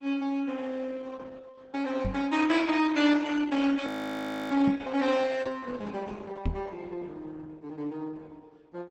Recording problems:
lossy compression; Opus, log-spectral distance 4 dB, nothing above 16.6 kHz
microphone thump; at 2 s, at 4.5 s and at 6.5 s; peak +2 dB vs average level
frozen audio; at 4 s for 0.5 s

